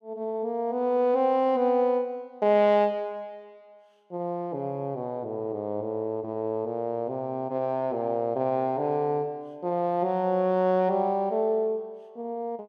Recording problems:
none

